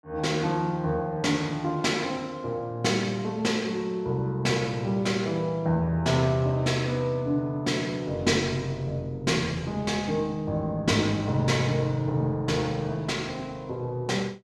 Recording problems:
none

